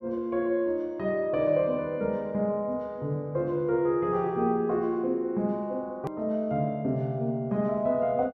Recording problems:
click at an edit; at 6 s

